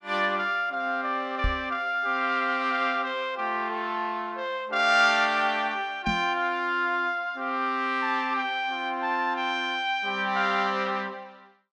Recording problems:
microphone thump; at 1.5 s and at 6 s; peak +1 dB vs average level

